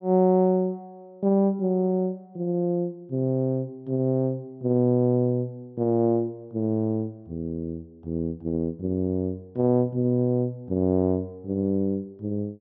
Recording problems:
treble cut off; nothing above 5.7 kHz

